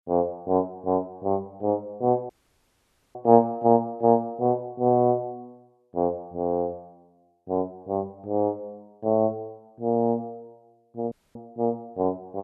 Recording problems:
dropout; at 2.5 s for 1 s and at 11 s

